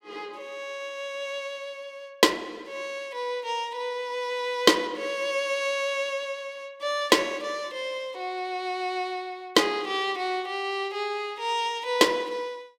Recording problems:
none

